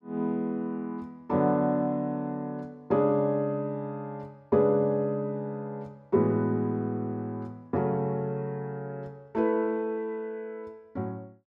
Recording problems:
none

